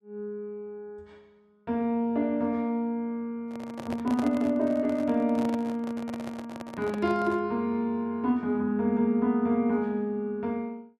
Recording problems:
handling noise; from 3.5 to 7.5 s; peak -4 dB vs average level

